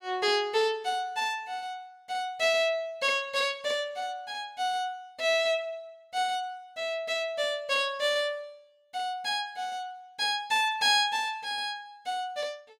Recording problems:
none

